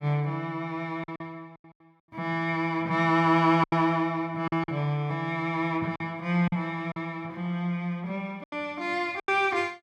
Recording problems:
lost packets; 6% of the sound replaced, filled with silence

